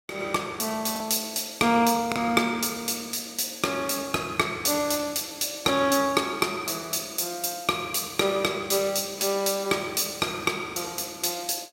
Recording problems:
packet loss; 1% of the sound replaced, filled with the last packet

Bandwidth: 16 kHz